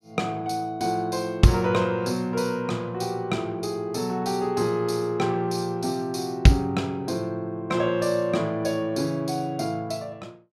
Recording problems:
none

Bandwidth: 15 kHz